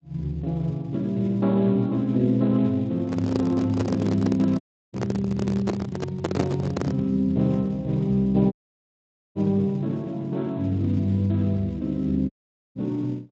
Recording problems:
lossy compression; Speex, log-spectral distance 2 dB
handling noise; from 3 to 7 s; peak +2 dB vs average level
dropout; at 4.5 s, at 8.5 s for 1 s and at 12 s

